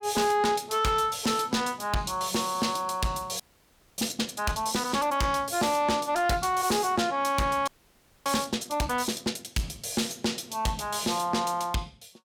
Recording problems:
distorted audio; soft clipping, signal-to-distortion ratio 8 dB
frozen audio; at 3.5 s for 0.5 s and at 7.5 s for 0.5 s

